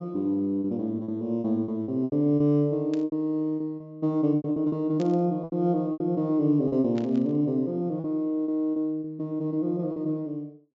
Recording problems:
treble cut off; nothing above 8 kHz
packet loss; 10% of the sound replaced, filled with repeated pitch periods
burst of static; at 3 s, at 5 s and at 7 s; peak -14 dB vs average level

